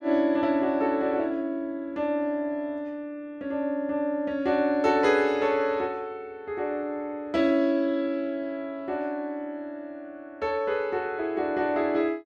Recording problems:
none

